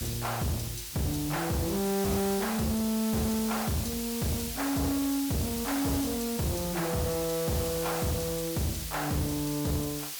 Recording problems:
distortion; soft clipping, signal-to-distortion ratio 8 dB
background hiss; slope +3 dB per octave, SNR 5 dB

